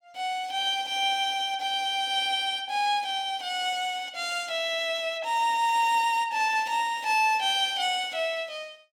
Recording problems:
none

